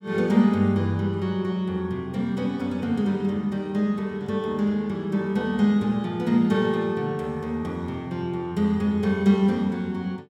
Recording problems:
none

